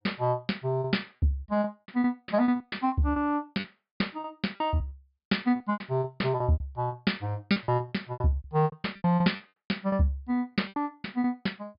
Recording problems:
low-pass filter; nothing above 5.1 kHz
lost packets; 20% of the sound replaced, filled with repeated pitch periods

